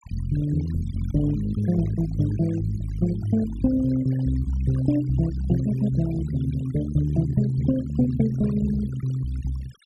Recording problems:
denoising artefacts; signal-to-artefact ratio 18 dB

